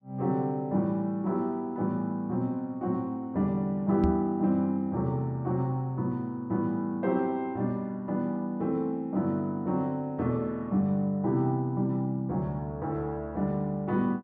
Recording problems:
microphone thump; at 4 s; peak +5 dB vs average level

